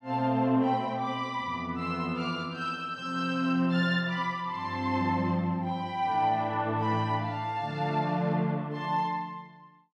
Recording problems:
none

